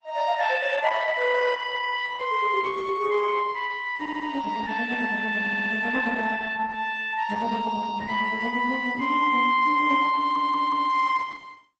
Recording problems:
lossy compression; Opus, log-spectral distance 4 dB, nothing above 8 kHz
stutter; at 4 s, at 5.5 s and at 10 s

